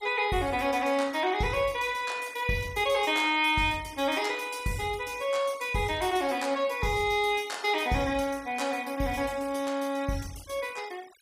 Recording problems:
noise reduction artefacts; signal-to-artefact ratio 21 dB

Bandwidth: 15.5 kHz